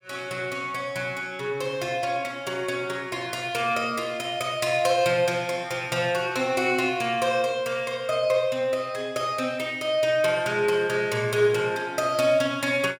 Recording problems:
none

